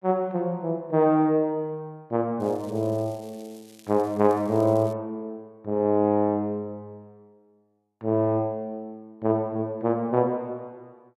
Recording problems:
crackling; from 2.5 to 5 s; loose cable, SNR 27 dB

